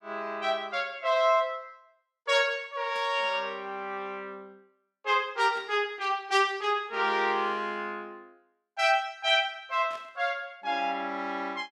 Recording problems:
burst of static; at 3 s, at 5.5 s and at 10 s; peak -15 dB vs average level

